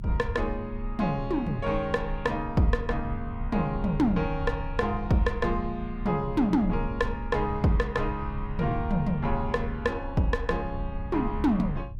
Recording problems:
low-frequency rumble; below 80 Hz, strongest tone 32 Hz, SNR 9 dB

